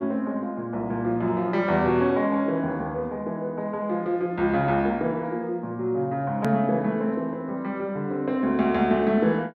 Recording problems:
hard cut with a click; at 6.5 s

